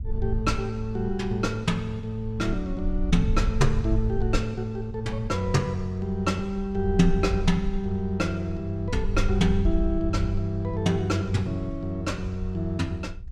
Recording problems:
low-frequency rumble; below 56 Hz, SNR 7 dB

